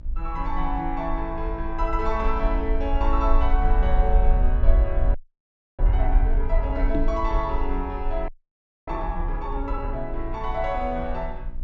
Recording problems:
low-pass filter; nothing above 8 kHz
electrical hum; 60 Hz, harmonics up to 1.3 kHz, SNR 20 dB
low-frequency rumble; below 48 Hz, SNR -2 dB
frozen audio; at 5 s for 0.5 s and at 8.5 s for 0.5 s
knock on the microphone; at 7 s; peak +7 dB vs average level

